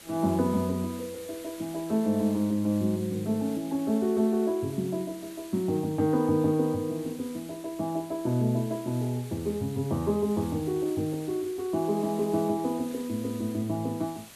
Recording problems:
hiss; SNR 19 dB

